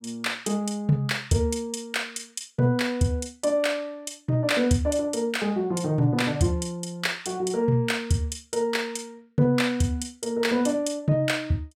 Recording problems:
none

